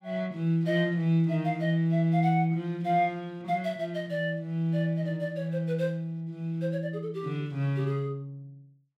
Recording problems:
none

